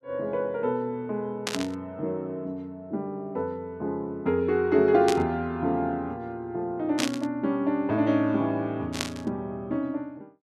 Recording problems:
static burst; 4 times, first at 1.5 s; peak +3 dB vs average level

